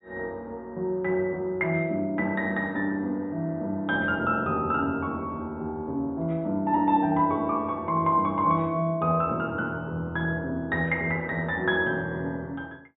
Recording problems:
low-pass filter; nothing above 4 kHz

